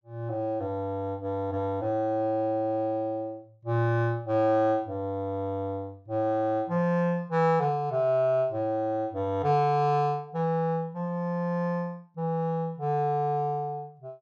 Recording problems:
none

